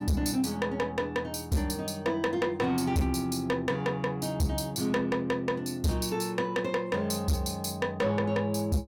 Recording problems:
distorted audio; soft clipping, signal-to-distortion ratio 7 dB

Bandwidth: 18 kHz